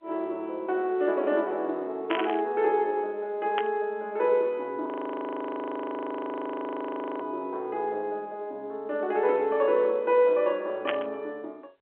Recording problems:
phone line; 260 Hz to 3.4 kHz, G.711
static burst; at 2 s, at 3.5 s and at 11 s; peak +2 dB vs average level
frozen audio; at 5 s for 2.5 s

